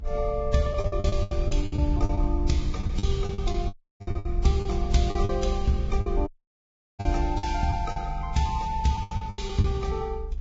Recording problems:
lossy codec; Vorbis, log-spectral distance 2 dB, nothing above 7.3 kHz
rumble; below 62 Hz, SNR 4 dB
lost packets; 17% of the sound replaced, filled with the last packet
dropout; at 3.5 s and at 6.5 s for 0.5 s

